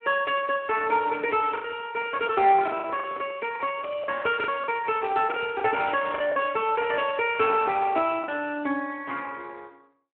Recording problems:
phone line; 280 Hz to 3.2 kHz, Speex
lost packets; 6% of the sound replaced, filled with the last packet
microphone handling noise; from 2 to 3.5 s; peak -9 dB vs average level
crackle; from 3 to 6.5 s and from 7 to 8 s; loose cable, SNR 27 dB

